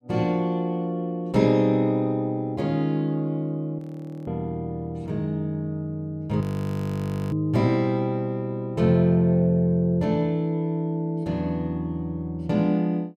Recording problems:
frozen audio; at 4 s and at 6.5 s for 1 s

